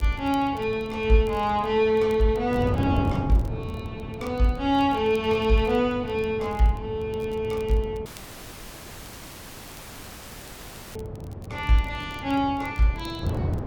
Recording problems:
wind on the microphone; below 280 Hz, SNR 10 dB
crackle; vinyl, SNR 29 dB
dropout; at 8 s for 3 s

